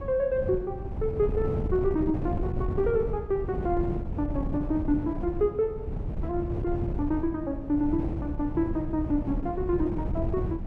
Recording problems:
wind on the microphone; below 180 Hz, SNR 4 dB

